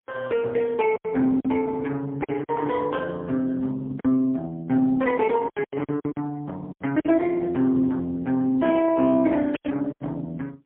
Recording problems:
phone line; 190 Hz to 3.1 kHz, AMR-NB, then MP3
packet loss; 8% of the sound replaced, filled with silence
static burst; at 9.5 s; peak -5 dB vs average level

